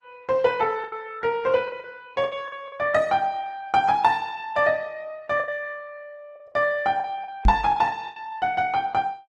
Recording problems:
lossy codec; Opus, log-spectral distance 2 dB, nothing above 13.3 kHz
packet loss; 8% of the sound replaced, filled with the last packet
microphone thump; at 7.5 s; peak +7 dB vs average level

